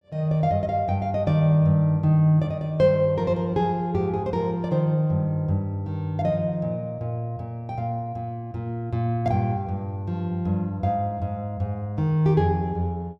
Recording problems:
none

